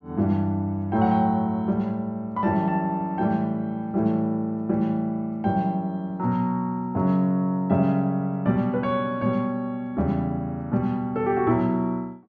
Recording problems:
treble cut off; nothing above 7.2 kHz

